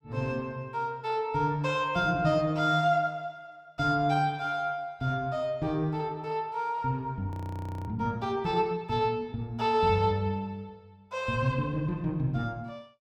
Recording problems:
audio freezing; at 7.5 s for 0.5 s

